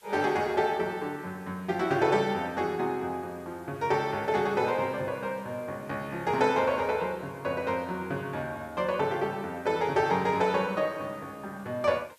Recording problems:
background hiss; slope +1 dB per octave, SNR 29 dB

